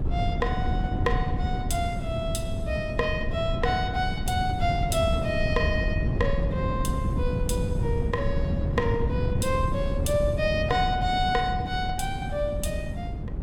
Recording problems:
wind noise; below 160 Hz, SNR 1 dB

